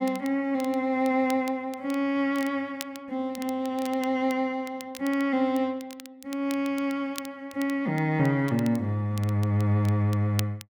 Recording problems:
crackling; vinyl, SNR 19 dB

